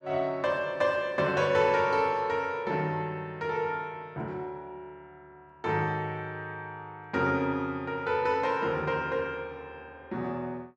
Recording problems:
none

